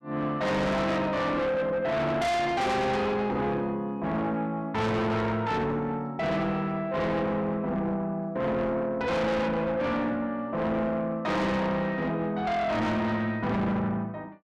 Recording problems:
distorted audio; soft clipping, signal-to-distortion ratio 6 dB

